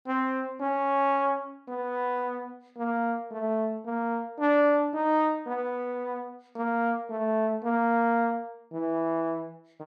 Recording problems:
none

